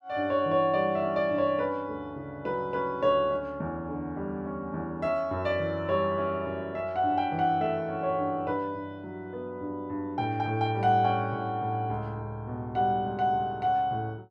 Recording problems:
none

